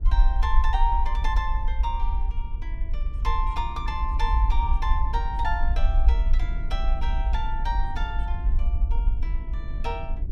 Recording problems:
rumble; below 52 Hz, SNR -4 dB
wind noise; below 140 Hz, SNR 9 dB

